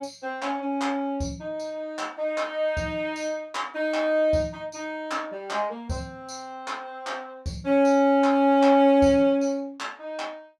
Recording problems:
none

